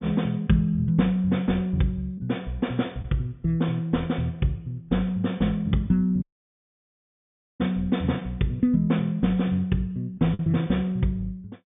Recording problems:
treble missing; nothing above 3.6 kHz
lost packets; 1% of the sound replaced, filled with the last packet
audio cutting out; at 6 s for 1.5 s

